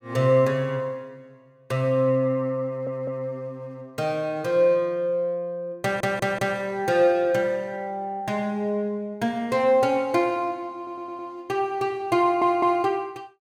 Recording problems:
audio stuttering; 4 times, first at 2.5 s

